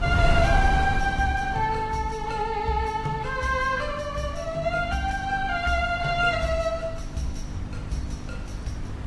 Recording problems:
lossy compression; Vorbis, then AAC, log-spectral distance 3 dB, nothing above 11.3 kHz
hum; 50 Hz, harmonics up to 300 Hz, SNR 14 dB
wind noise; below 130 Hz, SNR 7 dB

